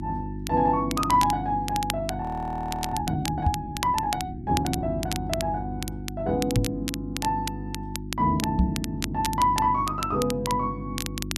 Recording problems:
electrical hum; 50 Hz, harmonics up to 350 Hz, SNR 8 dB
crackling; vinyl, SNR 9 dB
frozen audio; at 2 s for 0.5 s
microphone thump; at 3.5 s, at 6.5 s and at 8.5 s; peak +8 dB vs average level

